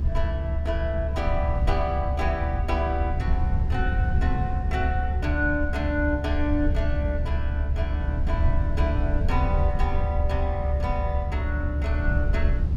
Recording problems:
rumble; below 76 Hz, SNR -3 dB

